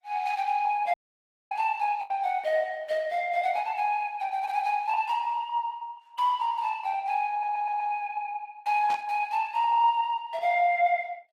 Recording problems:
lossy compression; Opus, log-spectral distance 2 dB
packet loss; 1.3% of the sound replaced, filled with the last packet
dropout; at 1 s for 0.5 s
audio stuttering; at 7.5 s
burst of static; at 9 s; peak -11 dB vs average level

